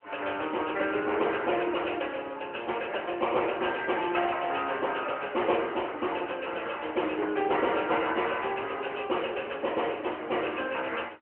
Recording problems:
phone line; 280 Hz to 3.1 kHz, AMR-NB

